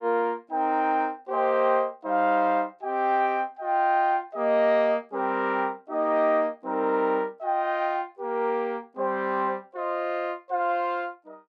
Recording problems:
none

